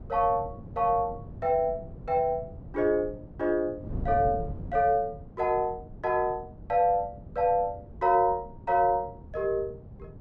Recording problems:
wind noise; below 190 Hz, SNR 15 dB

